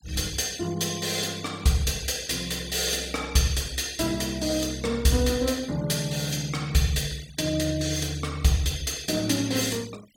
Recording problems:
noise reduction artefacts; signal-to-artefact ratio 20 dB

